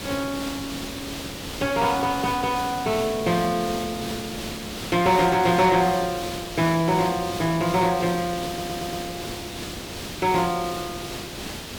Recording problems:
distorted audio; soft clipping, signal-to-distortion ratio 12 dB
hiss; slope -3 dB per octave, SNR 9 dB
audio stuttering; at 8.5 s

